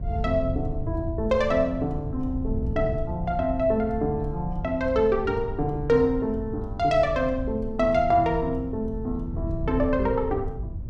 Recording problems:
hum; 60 Hz, harmonics up to 720 Hz, SNR 21 dB
wind on the microphone; below 100 Hz, SNR 8 dB

